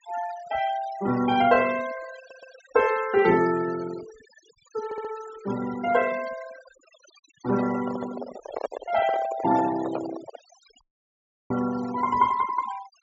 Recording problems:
treble missing; nothing above 8 kHz
denoising artefacts; signal-to-artefact ratio 15 dB
stutter; at 2 s and at 5 s
microphone handling noise; from 7.5 to 10 s; peak 0 dB vs average level
dropout; at 11 s for 0.5 s

